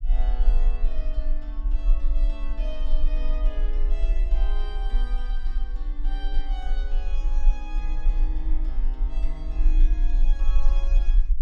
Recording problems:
rumble; below 36 Hz, strongest tone 24 Hz, SNR -15 dB

